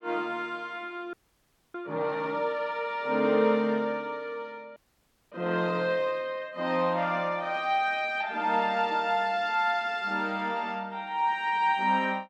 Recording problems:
frozen audio; at 1 s for 0.5 s and at 5 s for 0.5 s

